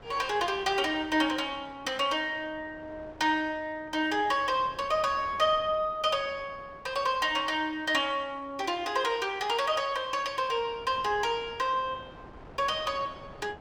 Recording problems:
wind noise; below 890 Hz, SNR 22 dB

